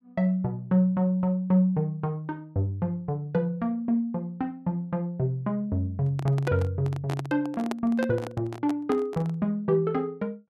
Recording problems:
handling noise; from 6 to 9.5 s; peak -2 dB vs average level

